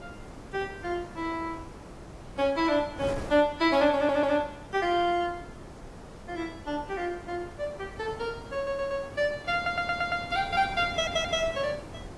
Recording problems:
codec artefacts; AAC, log-spectral distance 2 dB, nothing above 12.3 kHz
wind noise; below 720 Hz, SNR 15 dB
audio stuttering; 4 times, first at 4 s

